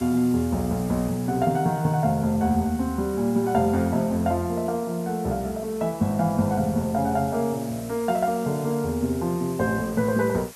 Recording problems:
background hiss; slope 0 dB per octave, SNR 19 dB

